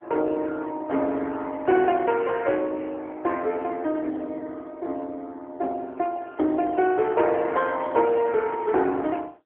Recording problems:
phone line; 240 Hz to 3.3 kHz, AMR-NB

